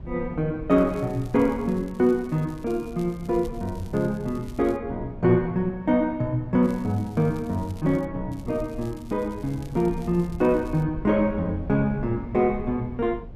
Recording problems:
rumble; below 130 Hz, SNR 15 dB
crackle; from 0.5 to 5 s, from 6.5 to 8 s and from 8.5 to 11 s; loose cable, SNR 28 dB

